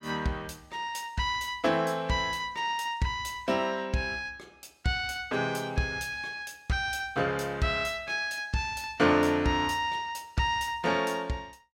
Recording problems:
none

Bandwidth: 16 kHz